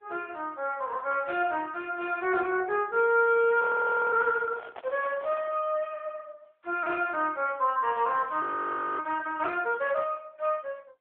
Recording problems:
telephone audio; 340 Hz to 3.5 kHz, AMR-NB
frozen audio; at 3.5 s for 0.5 s and at 8.5 s for 0.5 s
handling noise; from 4.5 to 5.5 s; peak -13 dB vs average level

